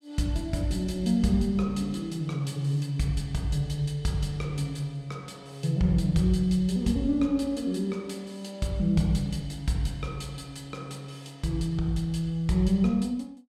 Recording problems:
none

